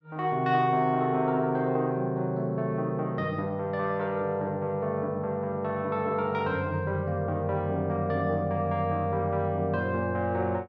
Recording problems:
none

